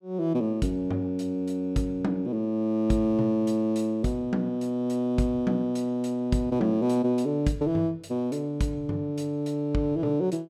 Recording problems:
none

